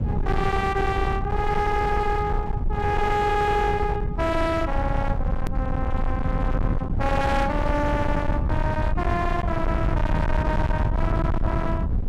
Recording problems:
distortion; hard clipping, uneven, signal-to-distortion ratio 7 dB
low-frequency rumble; below 150 Hz, SNR 1 dB
hard cut with a click; at 5.5 s

